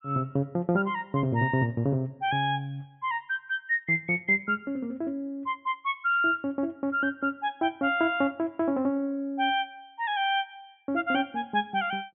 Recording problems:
low-pass filter; nothing above 3.5 kHz

